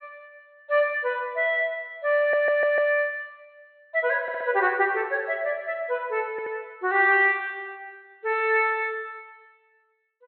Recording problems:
low-pass filter; nothing above 4.2 kHz
audio stuttering; at 2 s, at 4 s and at 6.5 s

